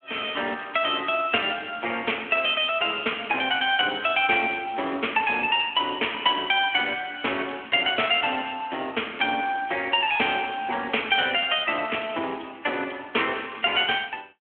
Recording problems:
phone line; 260 Hz to 3.3 kHz, Speex

